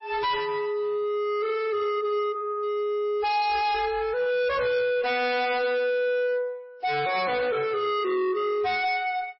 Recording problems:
lossy compression; MP3, log-spectral distance 2 dB, nothing above 4.9 kHz
distorted audio; hard clipping, signal-to-distortion ratio 6 dB

